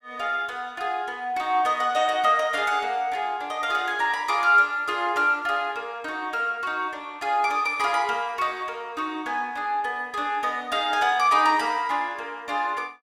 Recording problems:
none

